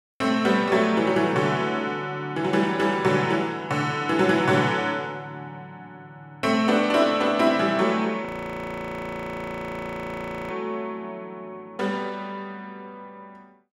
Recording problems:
frozen audio; at 8.5 s for 2.5 s

